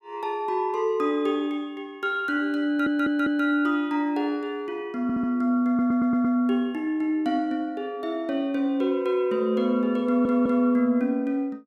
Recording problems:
audio stuttering; 4 times, first at 2.5 s

